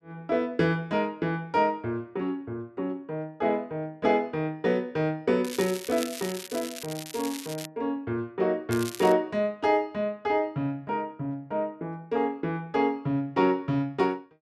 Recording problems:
crackling; from 5.5 to 7.5 s and at 8.5 s; loose cable, SNR 11 dB

